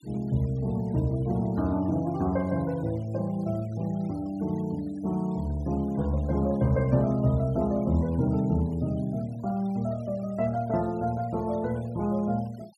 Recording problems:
denoising artefacts; signal-to-artefact ratio 26 dB

